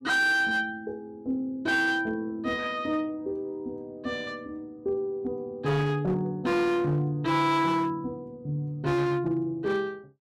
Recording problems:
distortion; hard clipping, signal-to-distortion ratio 8 dB

